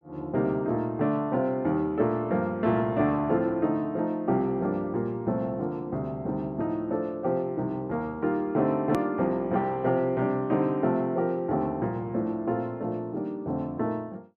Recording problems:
click at an edit; at 9 s

